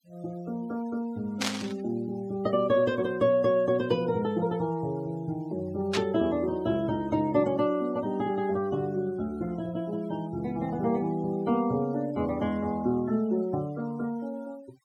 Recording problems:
noise reduction artefacts; signal-to-artefact ratio 24 dB
burst of static; at 1.5 s and at 6 s; peak +3 dB vs average level

